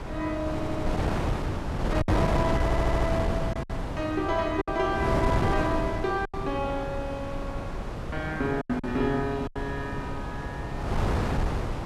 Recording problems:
wind on the microphone; below 560 Hz, SNR 0 dB
packet loss; 5% of the sound replaced, filled with silence
audio stuttering; at 0.5 s and at 2.5 s

